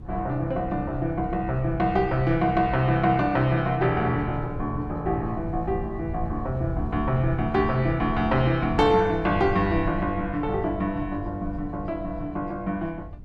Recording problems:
wind noise; below 110 Hz, SNR 11 dB

